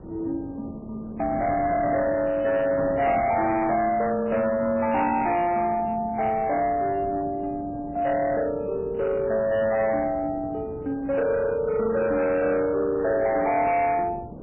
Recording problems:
codec artefacts; MP3, log-spectral distance 2 dB, nothing above 2.5 kHz
distorted audio; hard clipping, signal-to-distortion ratio 10 dB
wind noise; below 440 Hz, SNR 15 dB

